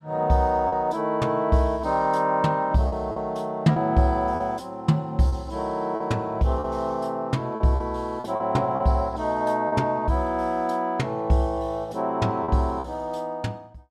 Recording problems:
lost packets; 5% of the sound replaced, filled with repeated pitch periods

